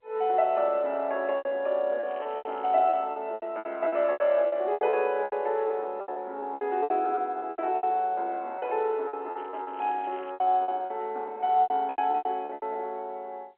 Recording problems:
phone line; 300 Hz to 3.4 kHz, G.711
packet loss; 16% of the sound replaced, filled with repeated pitch periods
crackle; at 2 s and at 9.5 s; loose cable, SNR 27 dB

